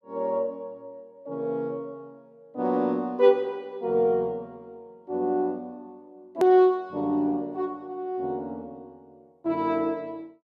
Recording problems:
click at an edit; at 6.5 s

